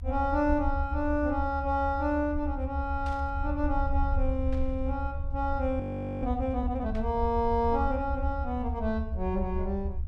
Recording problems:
rumble; below 76 Hz, SNR 4 dB
burst of static; at 3 s, at 4.5 s and at 7 s; peak -13 dB vs average level
frozen audio; at 6 s

